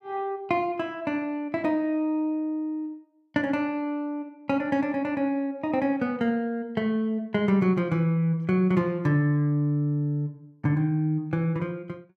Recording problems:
none

